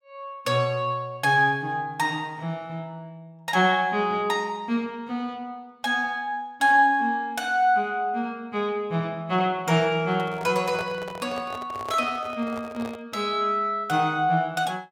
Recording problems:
microphone handling noise; from 10 to 13 s; peak -6 dB vs average level

